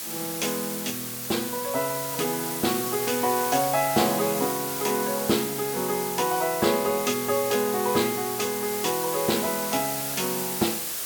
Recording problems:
hiss; slope 0 dB per octave, SNR 3 dB

